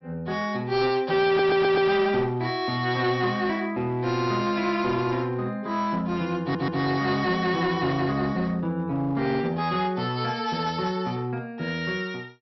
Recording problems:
low-pass filter; nothing above 5.6 kHz
distortion; hard clipping, uneven, signal-to-distortion ratio 10 dB
stutter; at 1.5 s and at 6.5 s

